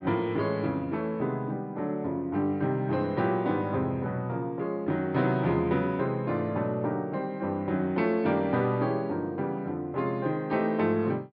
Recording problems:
low-pass filter; nothing above 5.3 kHz

